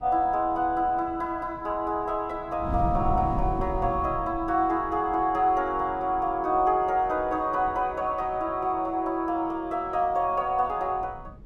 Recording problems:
wind noise; below 180 Hz, SNR 12 dB

